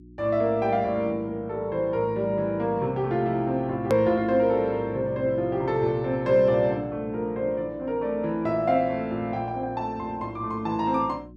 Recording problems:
electrical hum; 60 Hz, harmonics up to 360 Hz, SNR 22 dB
hard cut with a click; at 4 s

